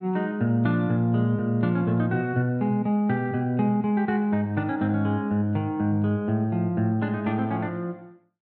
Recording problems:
none

